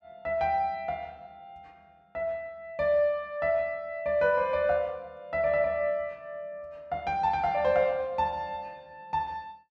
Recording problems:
none

